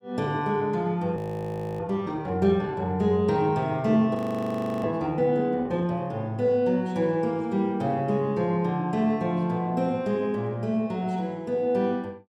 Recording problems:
audio freezing; at 1 s for 0.5 s and at 4 s for 0.5 s

